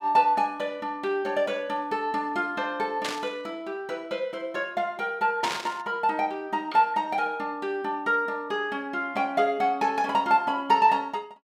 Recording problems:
static burst; at 3 s and at 5.5 s; peak 0 dB vs average level

